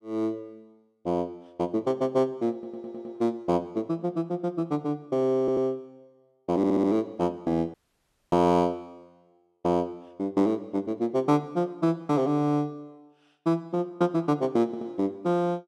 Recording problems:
audio stuttering; 4 times, first at 2.5 s
audio cutting out; at 7.5 s for 0.5 s

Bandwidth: 13 kHz